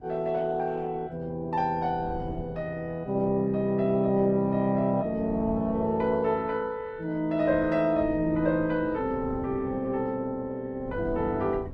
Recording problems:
lossy compression; Opus, log-spectral distance 2 dB
wind on the microphone; below 220 Hz, SNR 16 dB

